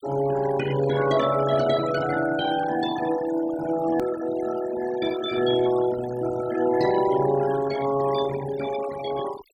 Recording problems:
denoising artefacts; signal-to-artefact ratio 12 dB
click at an edit; at 4 s

